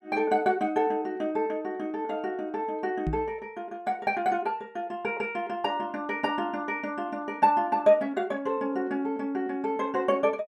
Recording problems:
microphone thump; at 3 s; peak +1 dB vs average level

